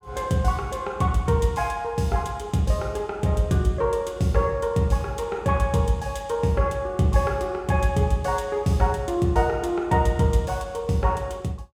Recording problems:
none

